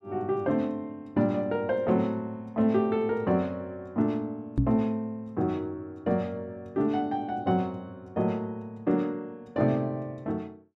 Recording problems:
knock on the microphone; at 4.5 s; peak +7 dB vs average level

